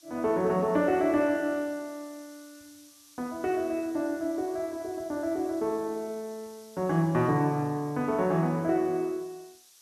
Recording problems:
background hiss; SNR 24 dB

